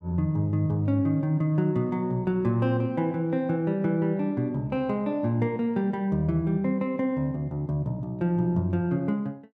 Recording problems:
none

